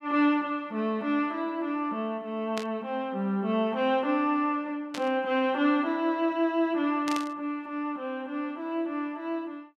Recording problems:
burst of static; at 2.5 s, at 5 s and at 7 s; peak -3 dB vs average level

